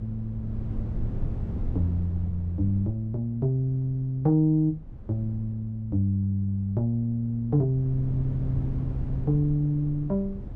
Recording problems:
wind on the microphone; below 130 Hz, SNR 9 dB

